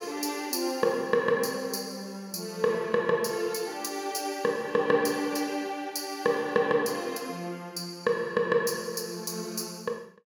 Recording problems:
none

